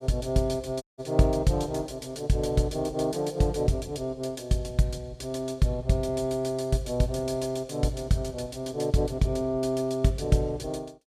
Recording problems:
dropout; at 1 s

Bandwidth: 14.5 kHz